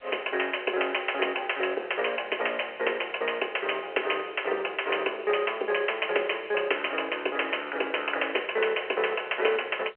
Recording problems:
phone line; 340 Hz to 3.1 kHz, G.711

